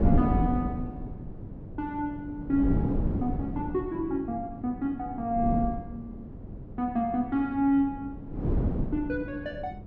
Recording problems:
electrical hum; 50 Hz, harmonics up to 500 Hz, SNR 20 dB
wind noise; below 260 Hz, SNR 3 dB

